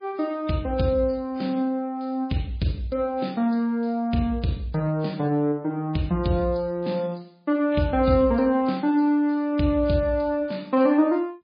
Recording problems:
codec artefacts; MP3, log-spectral distance 3 dB

